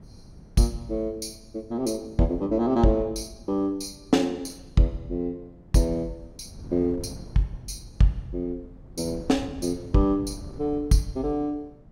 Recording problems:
wind on the microphone; below 200 Hz, SNR 19 dB

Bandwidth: 16.5 kHz